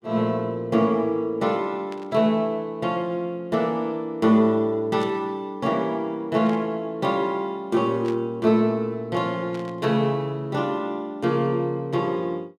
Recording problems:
burst of static; 5 times, first at 2 s; peak -13 dB vs average level

